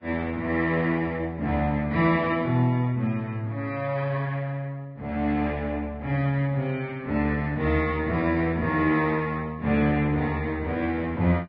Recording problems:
lossy compression; Vorbis, log-spectral distance 2 dB

